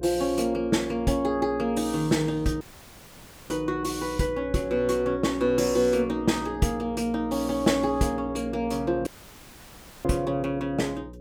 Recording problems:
hum; 60 Hz, harmonics up to 540 Hz, SNR 16 dB
audio cutting out; at 2.5 s for 1 s and at 9 s for 1 s

